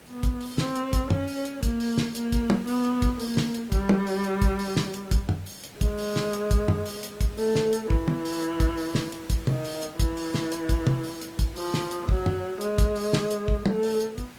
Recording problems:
codec artefacts; Opus, log-spectral distance 4 dB, nothing above 18.9 kHz
background hiss; SNR 19 dB

